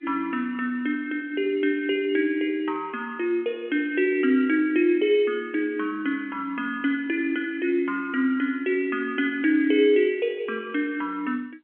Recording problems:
phone line; 240 Hz to 3.3 kHz, G.711

